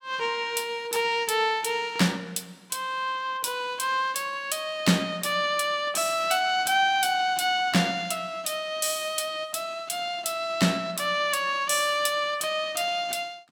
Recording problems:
none

